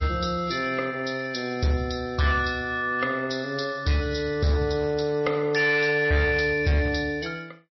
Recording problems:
lossy compression; MP3, log-spectral distance 5 dB, nothing above 5.7 kHz
distortion; hard clipping, uneven, signal-to-distortion ratio 11 dB

